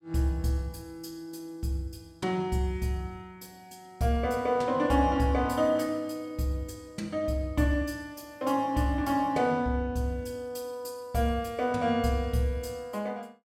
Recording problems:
none

